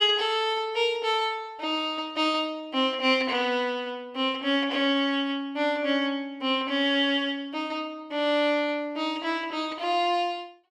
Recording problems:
none

